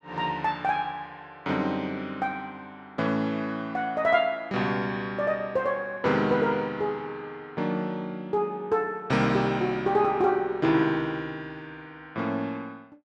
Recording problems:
none

